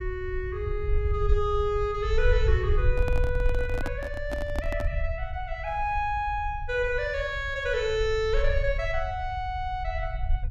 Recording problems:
rumble; below 68 Hz, SNR 3 dB
handling noise; from 3 to 5 s; peak -2 dB vs average level

